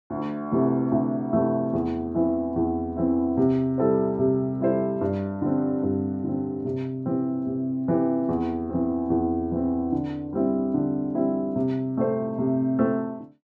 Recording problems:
none

